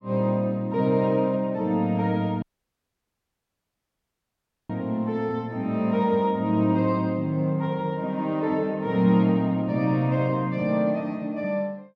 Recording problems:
dropout; at 2.5 s for 2.5 s

